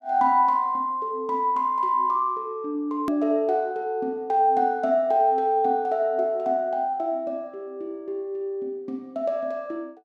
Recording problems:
hard cut with a click; at 3 s

